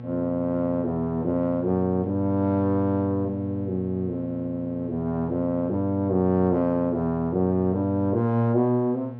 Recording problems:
treble cut off; nothing above 6.5 kHz
hum; 60 Hz, harmonics up to 1.1 kHz, SNR 13 dB

